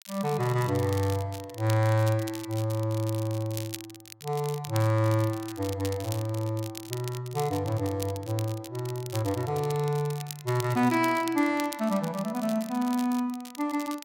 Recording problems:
crackle; vinyl, SNR 14 dB

